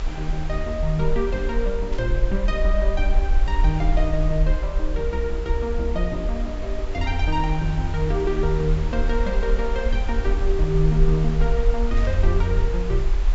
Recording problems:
low-pass filter; nothing above 7.6 kHz
hiss; slope -4 dB per octave, SNR 14 dB
rumble; below 44 Hz, SNR 0 dB
burst of static; at 2 s and at 12 s; peak -13 dB vs average level

